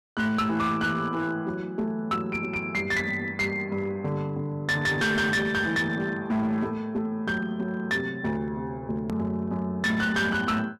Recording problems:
distortion; hard clipping, uneven, signal-to-distortion ratio 10 dB
hard cut with a click; at 9 s

